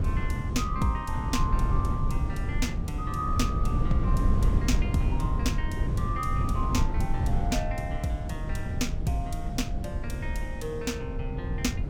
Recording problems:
wind noise; below 110 Hz, SNR -3 dB

